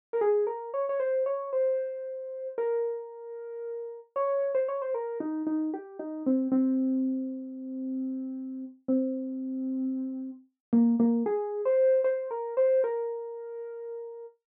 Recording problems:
none

